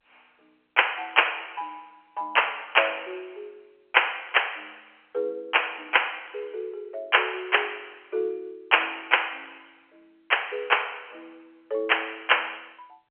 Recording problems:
telephone audio; 340 Hz to 3.2 kHz, G.711

